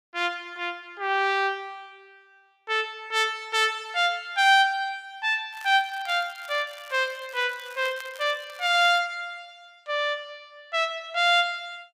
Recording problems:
crackling; from 5.5 to 6.5 s and from 6.5 to 9 s; loose cable, SNR 23 dB

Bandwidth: 15.5 kHz